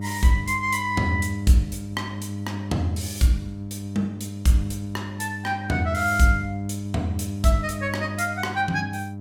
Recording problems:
mains hum; 50 Hz, harmonics up to 700 Hz, SNR 8 dB

